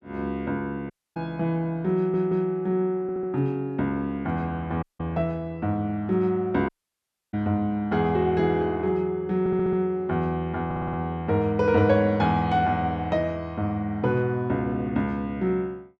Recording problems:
dropout; at 1 s, at 5 s and at 6.5 s for 0.5 s
audio stuttering; 4 times, first at 2 s

